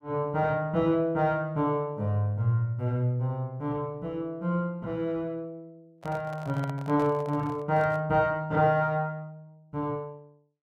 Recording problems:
microphone handling noise; from 6 to 8 s; peak -8 dB vs average level

